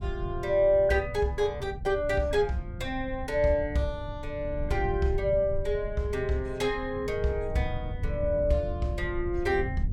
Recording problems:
low-frequency rumble; below 100 Hz, SNR 9 dB

